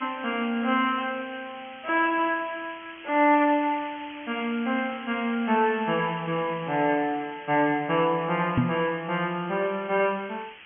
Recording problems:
treble missing; nothing above 3.2 kHz
hiss; SNR 18 dB
microphone bump; at 8.5 s; peak +7 dB vs average level

